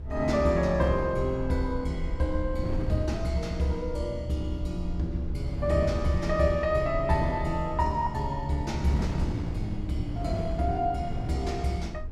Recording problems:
rumble; below 72 Hz, SNR 9 dB
wind on the microphone; below 240 Hz, SNR 9 dB

